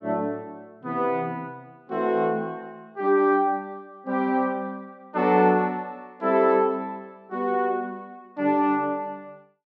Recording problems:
none

